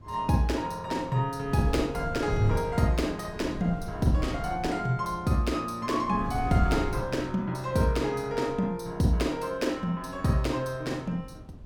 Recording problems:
wind on the microphone; below 160 Hz, SNR 10 dB

